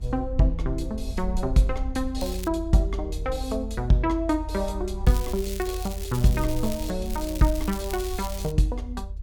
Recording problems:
rumble; below 62 Hz, strongest tone 46 Hz, SNR 7 dB
crackling; at 2 s, from 5 to 7 s and from 7 to 8.5 s; loose cable, SNR 13 dB

